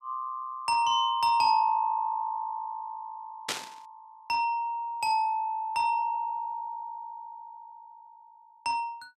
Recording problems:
static burst; at 3.5 s; peak +2 dB vs average level

